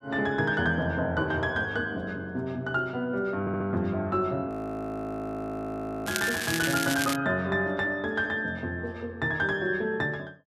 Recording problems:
stutter; at 3.5 s
audio freezing; at 4.5 s for 1.5 s
crackle; from 6 to 7 s; loose cable, SNR 3 dB

